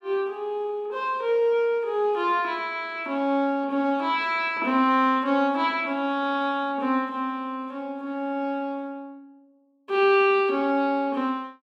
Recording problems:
none

